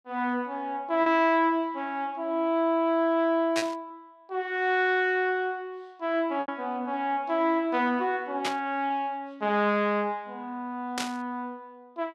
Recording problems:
lost packets; 1.7% of the sound replaced, filled with repeated pitch periods
static burst; at 3.5 s, at 8.5 s and at 11 s; peak +2 dB vs average level

